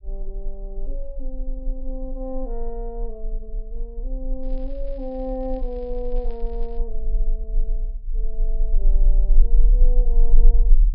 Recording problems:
treble missing; nothing above 5.5 kHz
low-frequency rumble; below 34 Hz, strongest tone 18 Hz, SNR -9 dB
crackle; from 4.5 to 7 s; loose cable, SNR 25 dB

